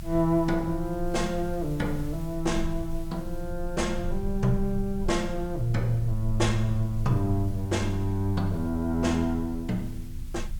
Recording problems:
hiss; slope 0 dB per octave, SNR 25 dB
rumble; below 54 Hz, strongest tone 20 Hz, SNR 10 dB

